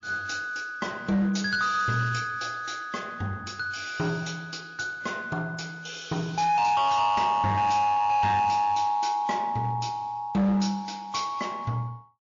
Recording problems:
lossy compression; MP3, log-spectral distance 3 dB, nothing above 6.7 kHz
distortion; hard clipping, uneven, signal-to-distortion ratio 12 dB

